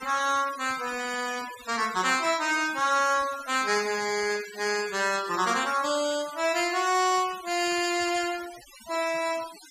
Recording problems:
noise reduction artefacts; signal-to-artefact ratio 14 dB

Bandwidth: 15 kHz